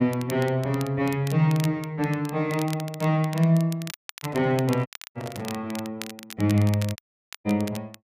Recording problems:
crackle; vinyl, SNR 16 dB
dropout; at 4 s, at 5 s and at 7 s
microphone handling noise; from 4 to 5.5 s; peak -10 dB vs average level

